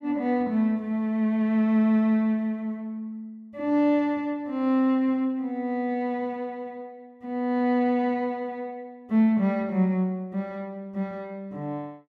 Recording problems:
none

